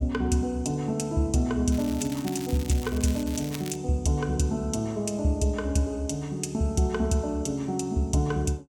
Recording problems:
crackle; from 1.5 to 4 s; loose cable, SNR 14 dB

